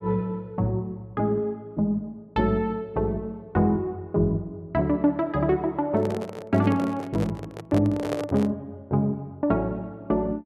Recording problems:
handling noise; from 6 to 8.5 s; peak 0 dB vs average level

